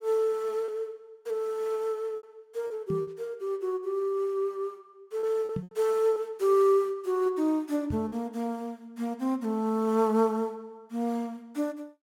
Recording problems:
packet loss; 3% of the sound replaced, filled with repeated pitch periods
microphone bump; at 3 s, at 5.5 s and at 8 s; peak -1 dB vs average level

